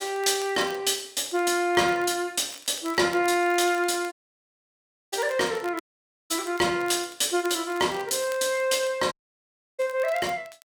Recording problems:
crackle; vinyl, SNR 22 dB
audio cutting out; at 4 s for 1 s, at 6 s for 0.5 s and at 9 s for 0.5 s

